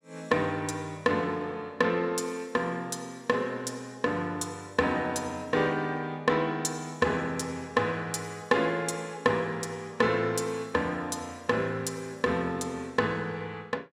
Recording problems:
none

